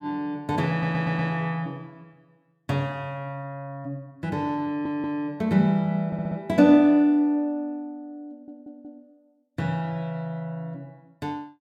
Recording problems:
audio stuttering; 4 times, first at 0.5 s

